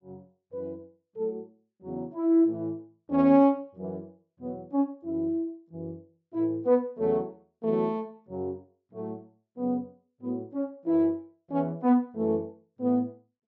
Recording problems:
treble missing; nothing above 7.4 kHz

